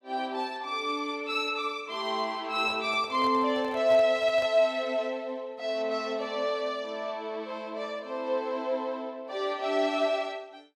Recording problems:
microphone handling noise; from 2.5 to 4.5 s; peak -7 dB vs average level

